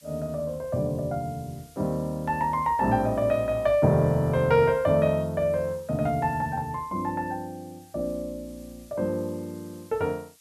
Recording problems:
hiss; slope +4 dB per octave, SNR 27 dB

